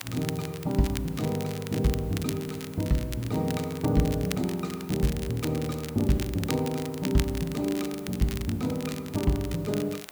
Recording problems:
background hiss; slope -4 dB per octave, SNR 21 dB
crackling; vinyl, SNR 12 dB

